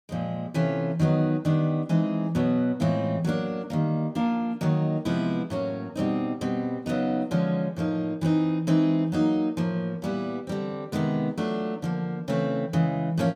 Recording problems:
none

